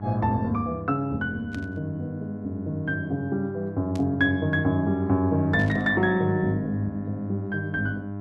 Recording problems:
electrical hum; 50 Hz, harmonics up to 1.4 kHz, SNR 10 dB
burst of static; at 1.5 s, at 4 s and at 5.5 s; peak -13 dB vs average level

